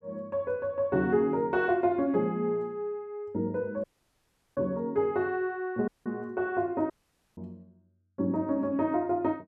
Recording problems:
dropout; at 4 s for 0.5 s, at 6 s and at 7 s

